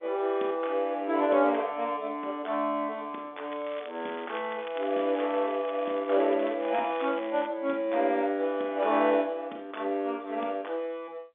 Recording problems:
phone line; 240 Hz to 3.6 kHz, G.711
crackling; from 3.5 to 7.5 s; loose cable, SNR 18 dB

